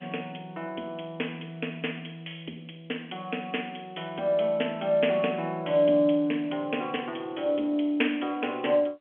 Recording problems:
telephone audio; 240 Hz to 3.4 kHz, G.711

